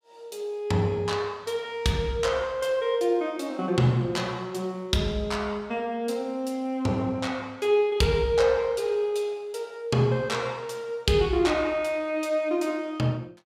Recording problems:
none

